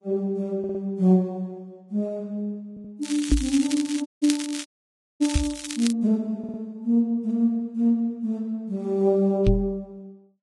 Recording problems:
codec artefacts; Vorbis, log-spectral distance 3 dB, nothing above 10.7 kHz
stutter; at 0.5 s, at 2.5 s and at 6.5 s
crackling; from 3 to 6 s; loose cable, SNR 9 dB
knock on the microphone; at 3.5 s, at 5.5 s and at 9.5 s; peak +7 dB vs average level
dropout; at 4 s and at 4.5 s for 0.5 s

